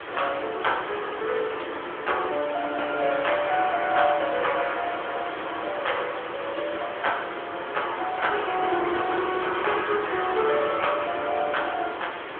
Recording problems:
telephone audio; 280 Hz to 3.4 kHz, AMR-NB
hiss; SNR 9 dB

